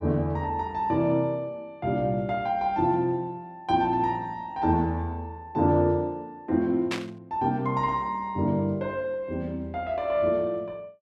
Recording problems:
static burst; at 7 s; peak 0 dB vs average level

